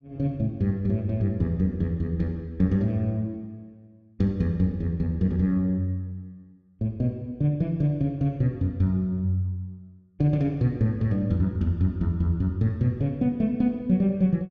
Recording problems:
none

